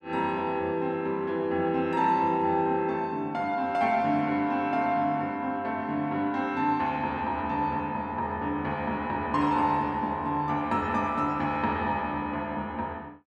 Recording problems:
none

